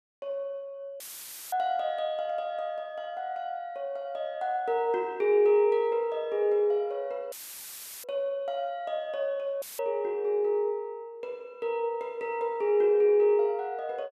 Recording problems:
audio cutting out; at 1 s for 0.5 s, at 7.5 s for 0.5 s and at 9.5 s; filled with static

